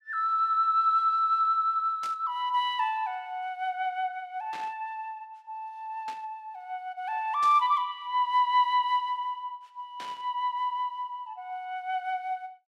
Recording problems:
burst of static; 5 times, first at 2 s; peak -11 dB vs average level

